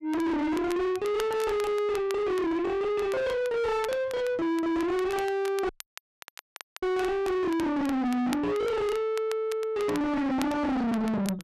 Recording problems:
distorted audio; soft clipping, signal-to-distortion ratio 5 dB
crackle; vinyl, SNR 18 dB
dropout; at 5.5 s for 1 s

